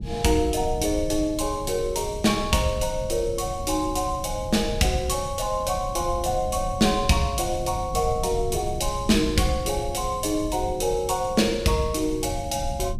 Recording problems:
rumble; below 120 Hz, SNR 10 dB

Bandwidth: 15 kHz